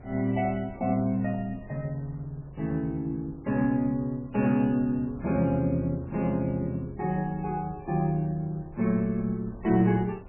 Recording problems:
lossy compression; MP3, log-spectral distance 2 dB, nothing above 2.5 kHz
wind on the microphone; below 230 Hz, SNR 21 dB

